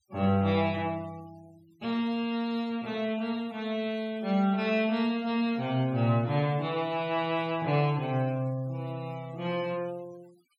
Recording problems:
noise reduction artefacts; signal-to-artefact ratio 24 dB

